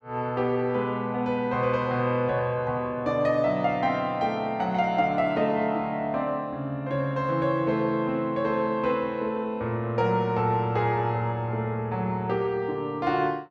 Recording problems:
none

